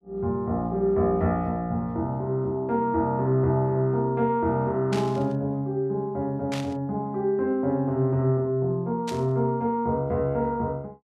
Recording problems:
static burst; at 5 s, at 6.5 s and at 9 s; peak -5 dB vs average level

